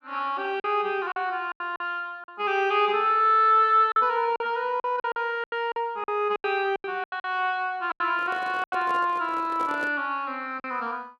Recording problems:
packet loss; 10% of the sound replaced, filled with silence
handling noise; from 8 to 10 s; peak -9 dB vs average level

